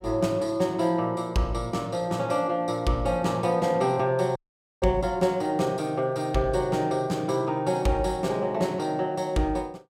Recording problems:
audio cutting out; at 4.5 s

